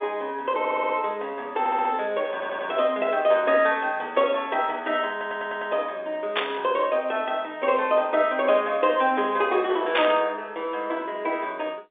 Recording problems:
telephone audio; 320 Hz to 3.6 kHz, G.711
stutter; 4 times, first at 0.5 s
burst of static; at 6.5 s and at 10 s; peak +4 dB vs average level

